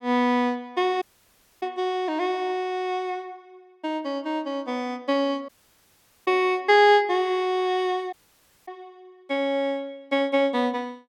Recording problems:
audio cutting out; at 1 s for 0.5 s, at 5.5 s for 1 s and at 8 s for 0.5 s

